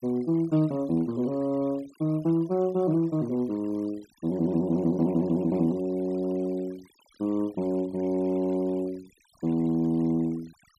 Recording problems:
noise reduction artefacts; signal-to-artefact ratio 26 dB

